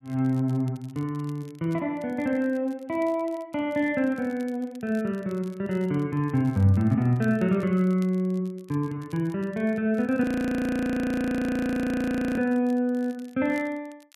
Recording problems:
crackling; vinyl, SNR 30 dB
audio freezing; at 10 s for 2 s

